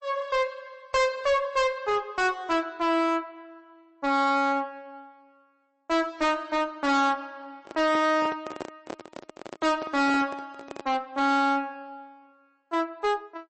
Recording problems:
lossy compression; MP3, log-spectral distance 2 dB, nothing above 8 kHz
distortion; hard clipping, uneven, signal-to-distortion ratio 6 dB
handling noise; from 7.5 to 11 s; peak -4 dB vs average level

